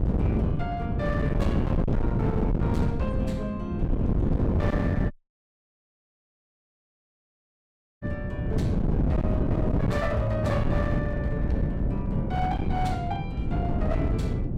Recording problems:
distorted audio; hard clipping, signal-to-distortion ratio 12 dB
wind noise; below 240 Hz, SNR -4 dB
dropout; at 5 s for 3 s

